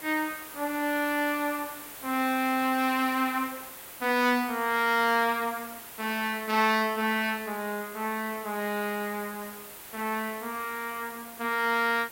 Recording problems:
hiss; slope -2 dB per octave, SNR 13 dB

